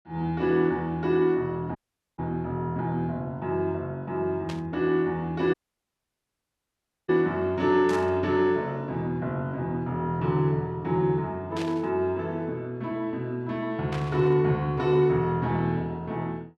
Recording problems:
audio cutting out; at 2 s and at 5.5 s for 1.5 s
static burst; 4 times, first at 4.5 s; peak -7 dB vs average level

